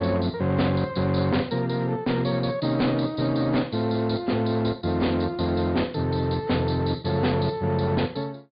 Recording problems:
treble cut off; nothing above 4.8 kHz
lossy codec; AAC, log-spectral distance 3 dB
distorted audio; hard clipping, uneven, signal-to-distortion ratio 12 dB

